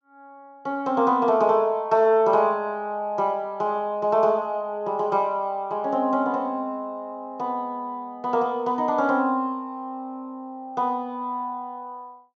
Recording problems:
low-pass filter; nothing above 8 kHz

